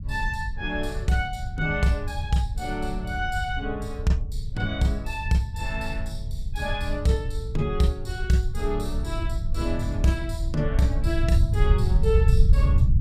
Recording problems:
rumble; below 84 Hz, SNR 0 dB

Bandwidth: 15 kHz